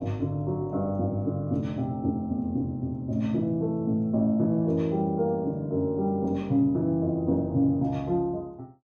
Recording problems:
none

